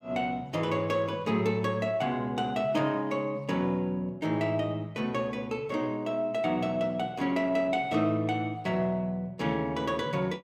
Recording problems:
none

